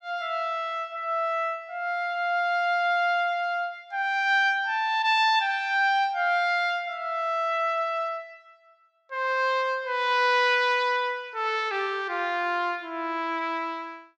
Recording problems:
none

